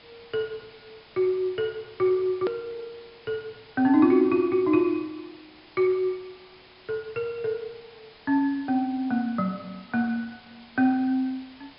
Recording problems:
low-pass filter; nothing above 4.8 kHz
lossy compression; MP2, log-spectral distance 6 dB
hiss; SNR 24 dB
click at an edit; at 2.5 s

